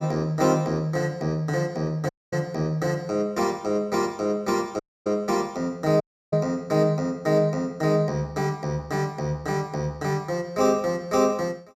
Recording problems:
audio cutting out; at 2 s, at 5 s and at 6 s

